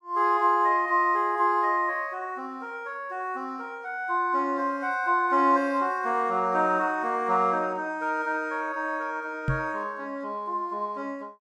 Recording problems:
microphone thump; at 9.5 s; peak +3 dB vs average level

